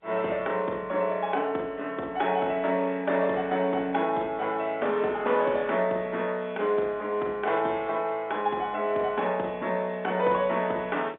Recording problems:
telephone audio; 300 Hz to 3.6 kHz, G.711

